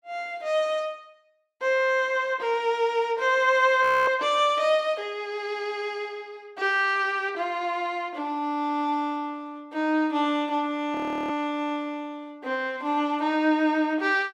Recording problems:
audio freezing; at 4 s and at 11 s

